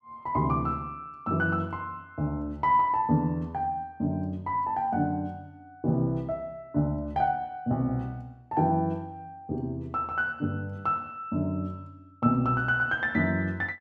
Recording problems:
none

